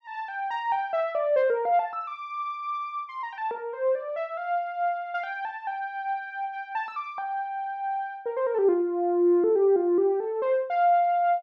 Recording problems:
none

